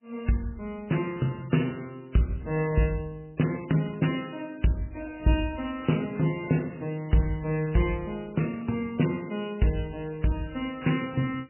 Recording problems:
codec artefacts; MP3, log-spectral distance 5 dB, nothing above 2.5 kHz

